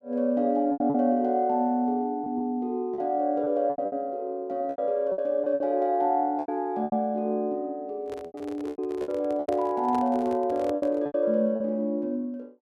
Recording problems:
packet loss; 10% of the sound replaced, filled with repeated pitch periods
microphone handling noise; from 8 to 11 s; peak -5 dB vs average level

